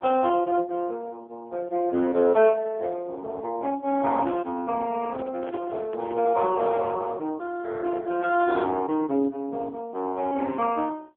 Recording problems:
telephone audio; 240 Hz to 3.5 kHz, AMR-NB
handling noise; from 4.5 to 7 s; peak -10 dB vs average level

